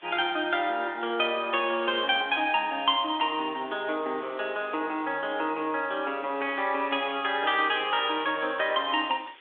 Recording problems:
phone line; 280 Hz to 3.6 kHz, G.726
hiss; SNR 27 dB

